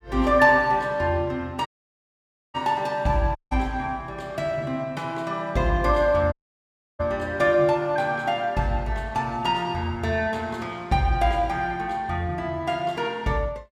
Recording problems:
dropout; at 1.5 s for 1 s, at 3.5 s and at 6.5 s for 0.5 s

